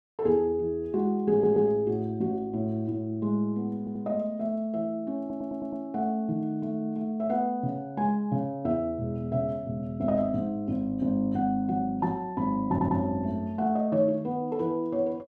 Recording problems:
stutter; 4 times, first at 1.5 s

